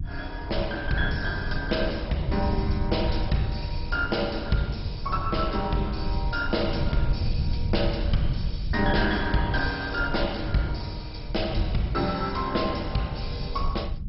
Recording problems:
lossy codec; MP2, then MP2, log-spectral distance 5 dB, nothing above 5.5 kHz
rumble; below 100 Hz, SNR 4 dB

